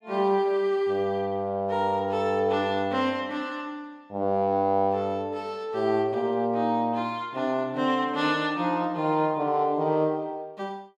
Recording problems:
none

